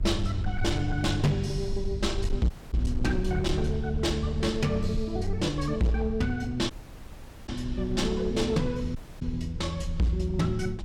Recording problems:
distorted audio; hard clipping, signal-to-distortion ratio 10 dB
electrical hum; 60 Hz, harmonics up to 300 Hz, SNR 18 dB
rumble; below 70 Hz, SNR 9 dB
wind noise; below 88 Hz, SNR 15 dB
audio cutting out; at 2.5 s, at 6.5 s for 1 s and at 9 s

